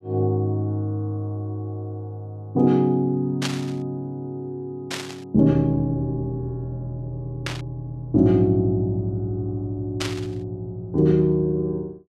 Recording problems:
static burst; 4 times, first at 3.5 s; peak +1 dB vs average level

